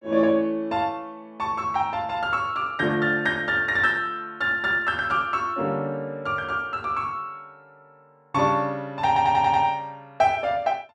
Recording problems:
stutter; at 9 s

